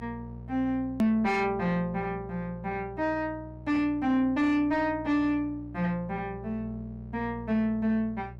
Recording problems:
distorted audio; soft clipping, signal-to-distortion ratio 11 dB
hum; 60 Hz, harmonics up to 780 Hz, SNR 15 dB
click at an edit; at 1 s

